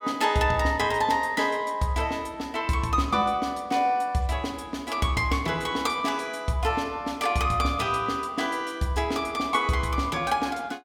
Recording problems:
none

